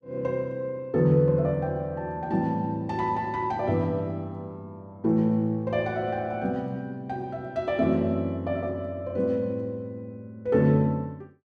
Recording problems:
none

